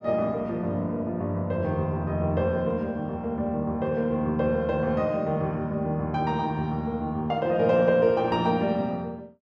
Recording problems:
none

